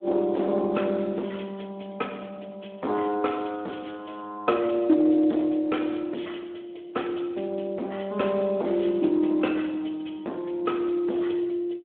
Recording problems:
phone line; 220 Hz to 3.5 kHz, Speex
distortion; hard clipping, uneven, signal-to-distortion ratio 9 dB

